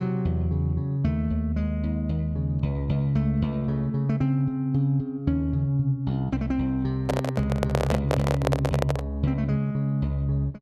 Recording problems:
microphone handling noise; from 7 to 9 s; peak +4 dB vs average level

